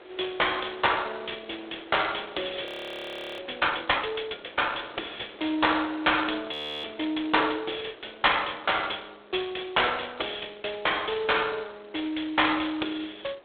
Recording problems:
telephone audio; 260 Hz to 3.7 kHz, G.726
wind noise; below 1.7 kHz, SNR 21 dB
frozen audio; at 2.5 s for 0.5 s and at 6.5 s

